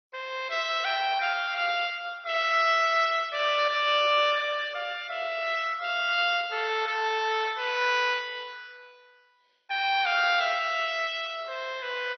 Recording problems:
lossy compression; MP2, log-spectral distance 6 dB, nothing above 4.9 kHz

